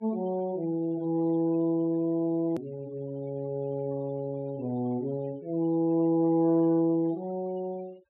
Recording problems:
low-pass filter; nothing above 4 kHz
denoising artefacts; signal-to-artefact ratio 27 dB
click at an edit; at 2.5 s

